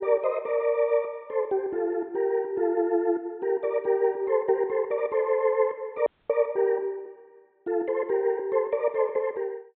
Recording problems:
treble missing; nothing above 4 kHz
frozen audio; at 6 s

